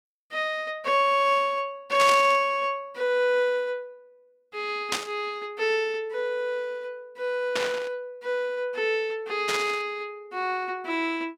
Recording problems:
burst of static; 4 times, first at 2 s; peak +4 dB vs average level

